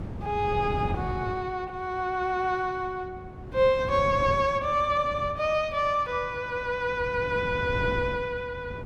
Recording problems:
wind noise; below 250 Hz, SNR 11 dB

